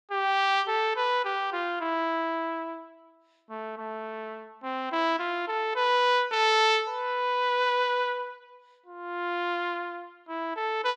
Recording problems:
none

